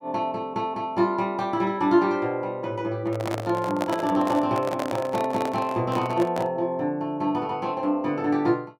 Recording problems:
handling noise; from 3 to 6.5 s; peak +1 dB vs average level

